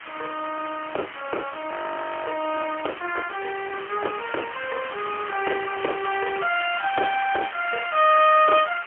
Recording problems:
phone line; 280 Hz to 3.3 kHz, AMR-NB, then MP3
hiss; SNR 11 dB
audio freezing; at 1.5 s for 0.5 s

